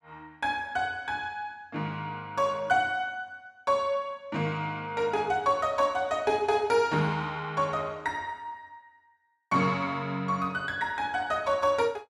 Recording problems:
none

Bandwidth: 13 kHz